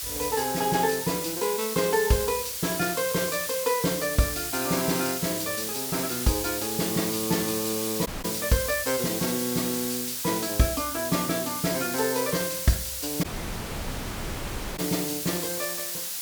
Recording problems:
background hiss; slope +3 dB per octave, SNR 2 dB
audio cutting out; at 8 s and at 13 s for 1.5 s

